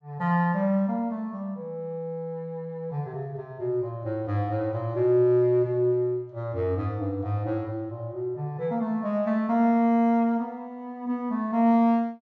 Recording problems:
none

